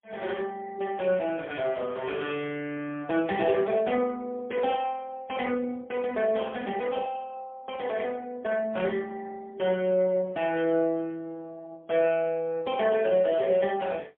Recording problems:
telephone audio; 190 Hz to 3.4 kHz, AMR-NB, then MP3

